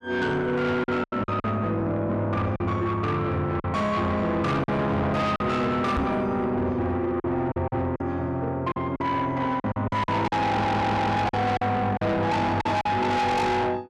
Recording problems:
distorted audio; soft clipping, signal-to-distortion ratio 7 dB
packet loss; 8% of the sound replaced, filled with silence
microphone bump; at 6 s; peak +2 dB vs average level
audio stuttering; at 10 s

